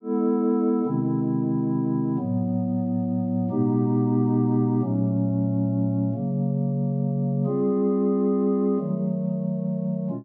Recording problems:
none

